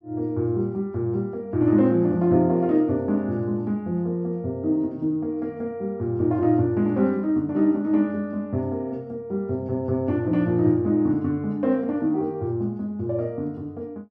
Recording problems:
none

